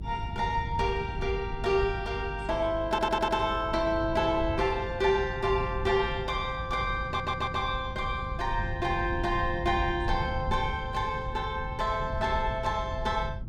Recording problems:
hum; 50 Hz, harmonics up to 400 Hz, SNR 14 dB
wind noise; below 120 Hz, SNR 9 dB
stutter; at 3 s and at 7 s

